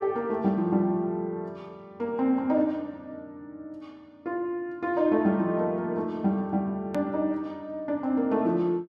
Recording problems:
hard cut with a click; at 7 s

